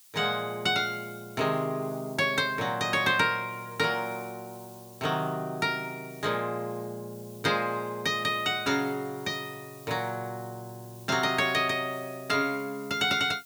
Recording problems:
background hiss; SNR 21 dB

